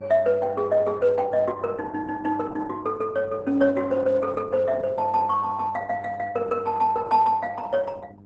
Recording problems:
codec artefacts; Opus, then Opus, log-spectral distance 3 dB, nothing above 8 kHz
electrical hum; 50 Hz, harmonics up to 800 Hz, SNR 21 dB

